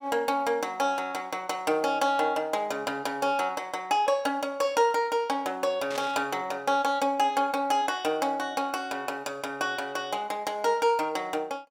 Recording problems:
burst of static; at 6 s; peak -6 dB vs average level

